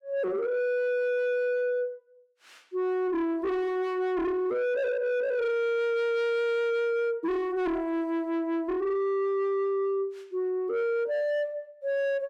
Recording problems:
distorted audio; soft clipping, signal-to-distortion ratio 8 dB

